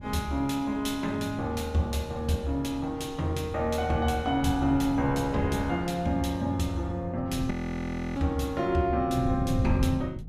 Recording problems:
wind on the microphone; below 160 Hz, SNR 9 dB
frozen audio; at 7.5 s for 0.5 s

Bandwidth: 15.5 kHz